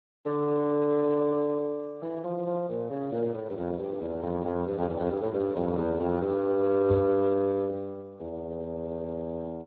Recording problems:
codec artefacts; AAC, then Speex, log-spectral distance 2 dB
microphone bump; at 7 s; peak +4 dB vs average level

